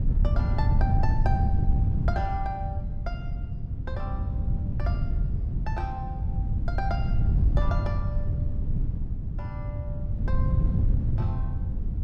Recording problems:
wind noise; below 110 Hz, SNR -10 dB

